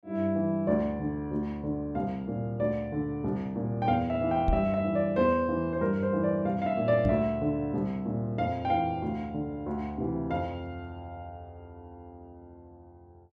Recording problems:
microphone bump; at 4.5 s and at 7 s; peak +4 dB vs average level

